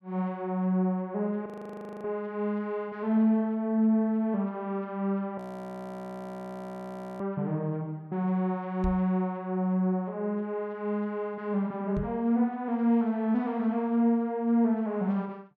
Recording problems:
audio freezing; at 1.5 s for 0.5 s and at 5.5 s for 2 s
microphone bump; at 9 s and at 12 s; peak -1 dB vs average level

